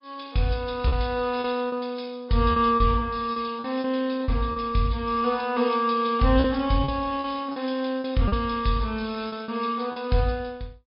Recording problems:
low-pass filter; nothing above 5.2 kHz
codec artefacts; MP3, log-spectral distance 2 dB
lost packets; 7% of the sound replaced, filled with repeated pitch periods

